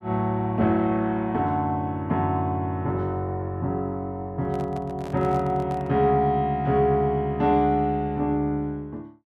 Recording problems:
handling noise; from 4.5 to 6 s; peak -11 dB vs average level

